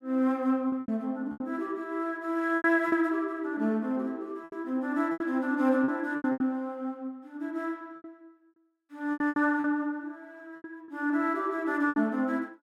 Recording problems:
lost packets; 10% of the sound replaced, filled with repeated pitch periods

